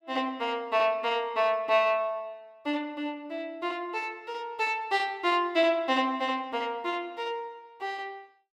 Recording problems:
none

